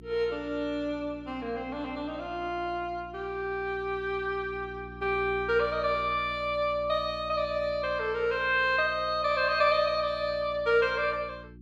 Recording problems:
hum; 60 Hz, harmonics up to 360 Hz, SNR 19 dB

